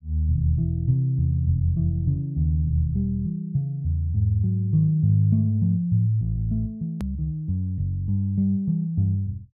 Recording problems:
edit click; at 7 s

